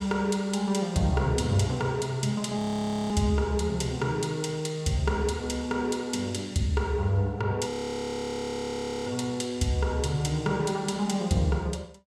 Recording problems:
audio freezing; at 2.5 s for 0.5 s and at 7.5 s for 1.5 s

